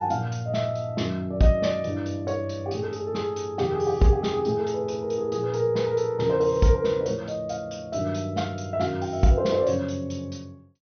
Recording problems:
low-pass filter; nothing above 6.2 kHz

